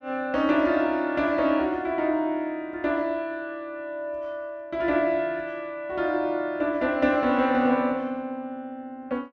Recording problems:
none

